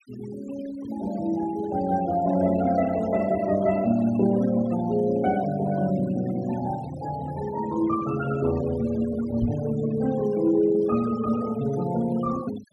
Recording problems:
noise reduction artefacts; signal-to-artefact ratio 17 dB
microphone thump; at 9.5 s; peak +2 dB vs average level

